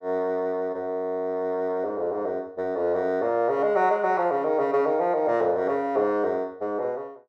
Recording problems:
none

